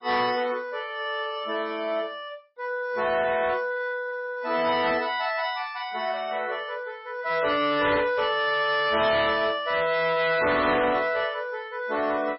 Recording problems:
lossy compression; MP3, log-spectral distance 3 dB, nothing above 4.6 kHz
distorted audio; hard clipping, signal-to-distortion ratio 11 dB

